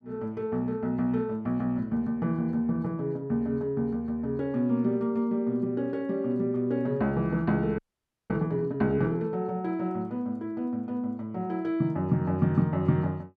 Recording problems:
audio freezing; at 8 s for 0.5 s

